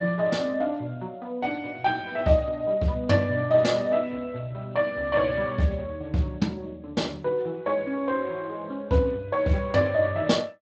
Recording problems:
codec artefacts; Speex, log-spectral distance 3 dB

